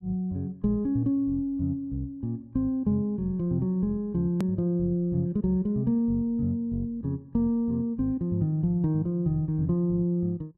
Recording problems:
hard cut with a click; at 4.5 s

